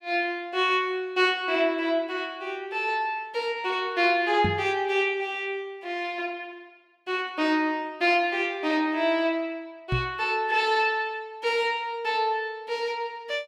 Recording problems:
microphone thump; at 4.5 s and at 10 s; peak +2 dB vs average level

